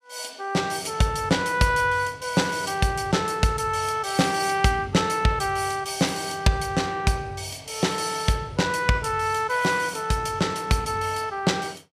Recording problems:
none

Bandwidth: 14.5 kHz